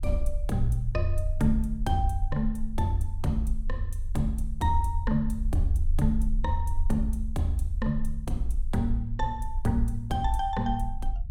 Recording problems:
low-frequency rumble; below 44 Hz, strongest tone 20 Hz, SNR 5 dB

